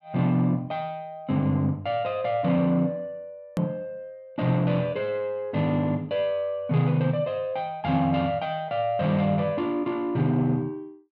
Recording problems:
hard cut with a click; at 3.5 s

